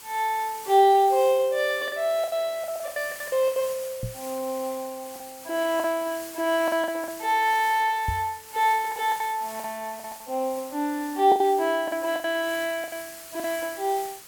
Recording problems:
background hiss; slope 0 dB per octave, SNR 15 dB
lost packets; 9% of the sound replaced, filled with the last packet
microphone bump; at 4 s and at 8 s; peak -1 dB vs average level

